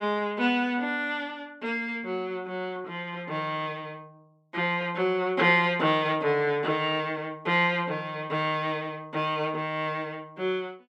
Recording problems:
none

